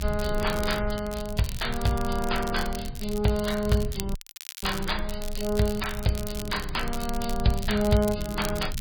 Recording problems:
lossy codec; MP3, log-spectral distance 4 dB
rumble; below 76 Hz, strongest tone 20 Hz, SNR 9 dB
crackling; vinyl, SNR 12 dB
dropout; at 4 s

